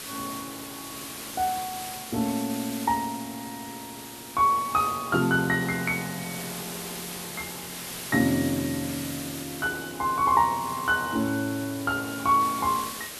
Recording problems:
hiss; SNR 10 dB

